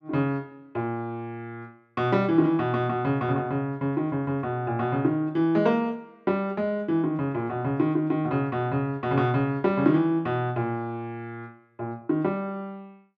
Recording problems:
none

